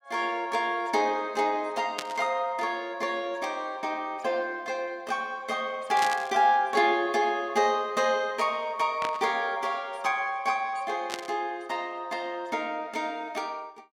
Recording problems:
static burst; 4 times, first at 2 s; peak 0 dB vs average level

